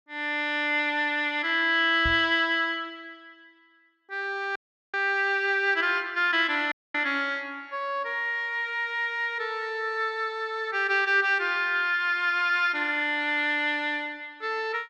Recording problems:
microphone bump; at 2 s; peak -4 dB vs average level
dropout; at 4.5 s and at 6.5 s

